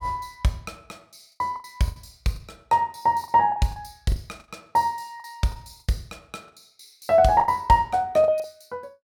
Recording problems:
lost packets; 11% of the sound replaced, filled with the last packet

